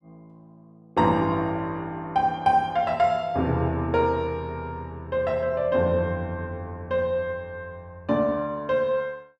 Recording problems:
none

